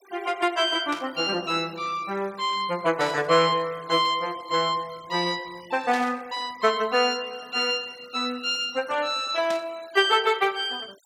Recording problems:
noise reduction artefacts; signal-to-artefact ratio 24 dB
burst of static; 4 times, first at 1 s; peak -7 dB vs average level

